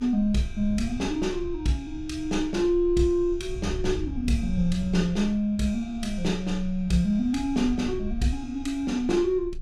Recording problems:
rumble; below 68 Hz, strongest tone 20 Hz, SNR 13 dB

